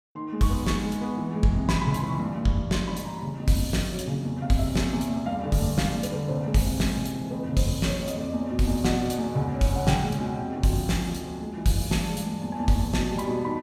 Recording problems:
none

